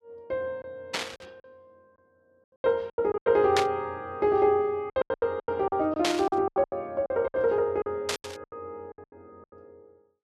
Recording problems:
lost packets; 16% of the sound replaced, filled with silence
burst of static; 4 times, first at 1 s; peak +3 dB vs average level

